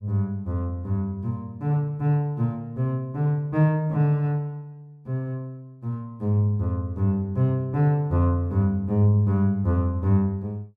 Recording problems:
none

